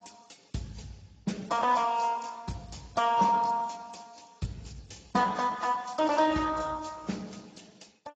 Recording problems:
codec artefacts; Speex, then AAC, log-spectral distance 6 dB, nothing above 7.6 kHz

